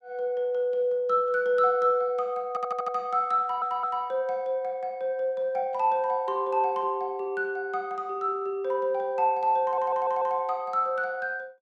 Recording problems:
stutter; at 2.5 s, at 3.5 s and at 9.5 s

